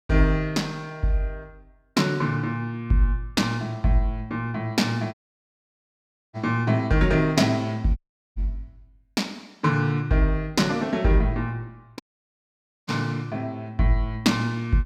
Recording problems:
audio cutting out; at 5 s for 1 s, at 8 s and at 12 s for 1 s

